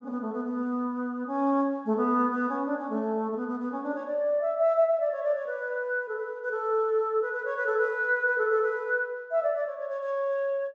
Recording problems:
treble cut off; nothing above 8 kHz

